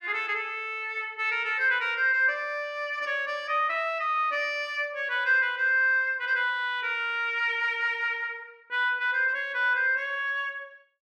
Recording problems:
none

